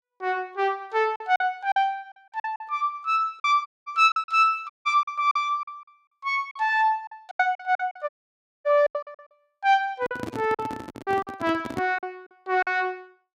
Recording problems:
packet loss; 11% of the sound replaced, filled with silence
audio cutting out; at 3.5 s, at 4.5 s and at 8 s for 0.5 s
microphone handling noise; from 10 to 12 s; peak -3 dB vs average level

